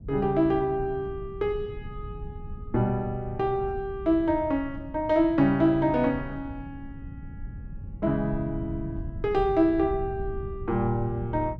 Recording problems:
low-frequency rumble; below 120 Hz, SNR 13 dB

